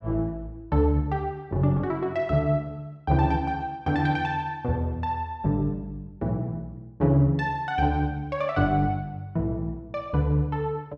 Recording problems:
none

